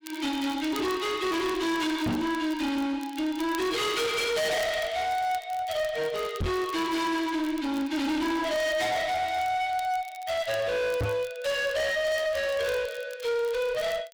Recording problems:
distortion; hard clipping, uneven, signal-to-distortion ratio 6 dB
crackling; vinyl, SNR 21 dB
microphone bump; at 2 s, at 6.5 s and at 11 s; peak +3 dB vs average level

